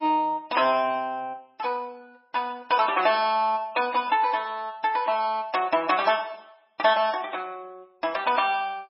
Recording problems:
lossy codec; MP3, log-spectral distance 3 dB, nothing above 5.3 kHz

